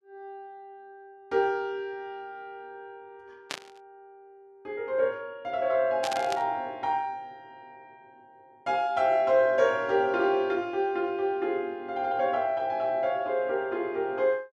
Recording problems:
burst of static; at 3.5 s and at 6 s; peak -2 dB vs average level

